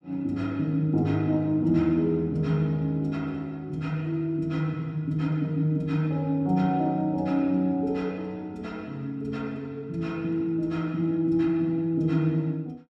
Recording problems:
none

